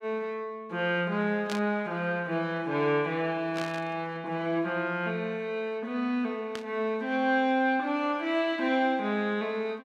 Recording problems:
static burst; at 1.5 s, at 3.5 s and at 6.5 s; peak -4 dB vs average level

